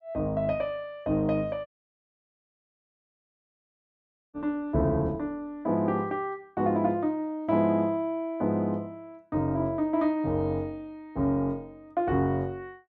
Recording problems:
audio cutting out; at 1.5 s for 2.5 s

